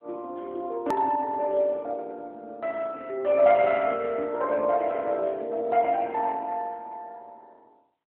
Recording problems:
telephone audio; 300 Hz to 2.8 kHz, AMR-NB
click at an edit; at 1 s

